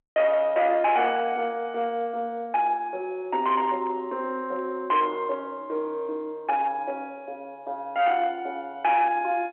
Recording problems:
telephone audio; 280 Hz to 3.2 kHz, G.711
distortion; hard clipping, signal-to-distortion ratio 11 dB

